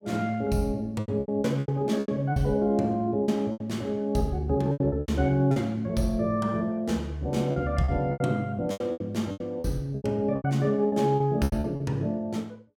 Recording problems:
packet loss; 13% of the sound replaced, filled with repeated pitch periods

